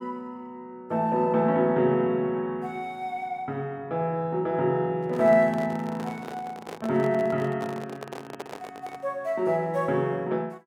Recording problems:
handling noise; from 5 to 9 s; peak -6 dB vs average level

